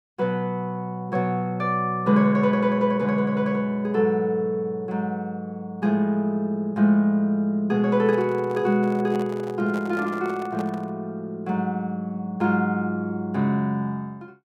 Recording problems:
handling noise; from 8 to 11 s; peak -9 dB vs average level

